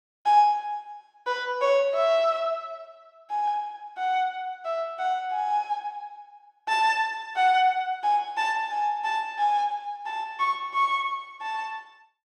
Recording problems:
none

